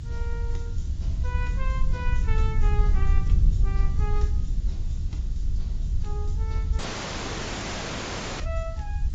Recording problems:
lossy codec; AAC, log-spectral distance 4 dB, nothing above 7.3 kHz
background hiss; slope +1 dB per octave, SNR 16 dB
rumble; below 74 Hz, SNR -2 dB
wind on the microphone; below 68 Hz, SNR -11 dB
dropout; at 7 s for 1.5 s

